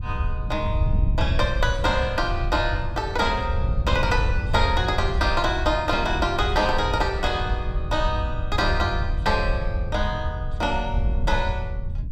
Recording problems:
wind on the microphone; below 88 Hz, SNR 2 dB

